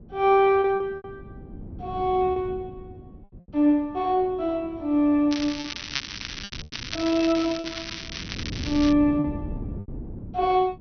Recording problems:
treble missing; nothing above 6.1 kHz
wind noise; below 250 Hz, SNR 16 dB
lost packets; 5% of the sound replaced, filled with repeated pitch periods
crackling; from 5.5 to 9 s; loose cable, SNR 10 dB

